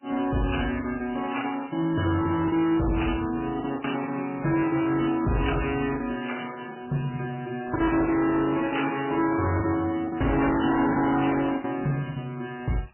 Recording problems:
codec artefacts; MP3, then MP3, log-spectral distance 6 dB, nothing above 3 kHz
distorted audio; hard clipping, uneven, signal-to-distortion ratio 8 dB
packet loss; 7% of the sound replaced, filled with the last packet

